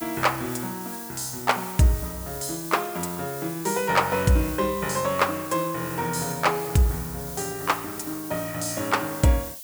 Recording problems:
background hiss; SNR 10 dB

